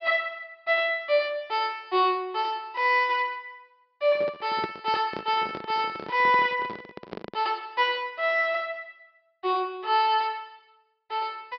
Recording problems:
low-pass filter; nothing above 5.5 kHz
handling noise; from 4 to 7.5 s; peak -3 dB vs average level

